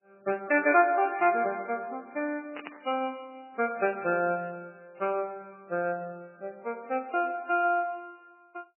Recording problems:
lossy compression; MP3, log-spectral distance 3 dB, nothing above 2.4 kHz
burst of static; at 2.5 s; peak -8 dB vs average level

